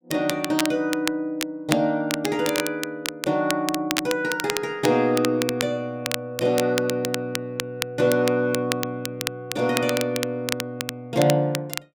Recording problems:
crackle; vinyl, SNR 6 dB

